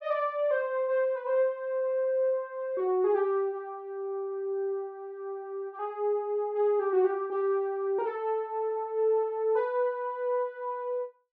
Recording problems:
treble missing; nothing above 6.5 kHz

